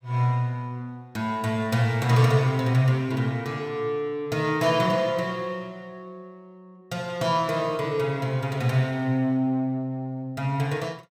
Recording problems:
none

